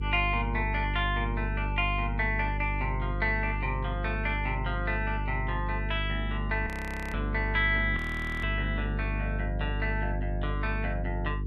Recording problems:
hum; 50 Hz, harmonics up to 450 Hz, SNR 2 dB
audio freezing; at 6.5 s and at 8 s

